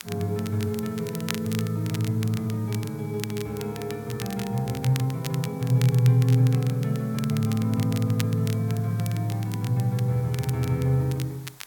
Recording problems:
hiss; SNR 25 dB
crackle; vinyl, SNR 15 dB

